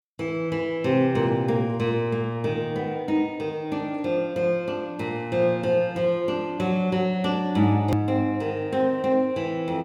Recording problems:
hard cut with a click; at 8 s

